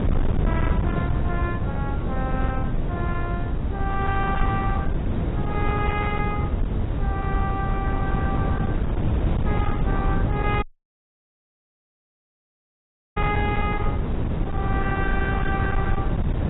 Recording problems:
codec artefacts; AAC, log-spectral distance 2 dB, nothing above 3.4 kHz
distortion; hard clipping, uneven, signal-to-distortion ratio 11 dB
wind on the microphone; below 190 Hz, SNR -4 dB
dropout; at 11 s for 2.5 s

